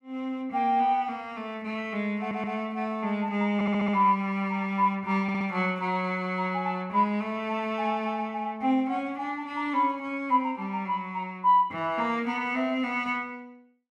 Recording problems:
audio stuttering; at 2 s, at 3.5 s and at 5 s

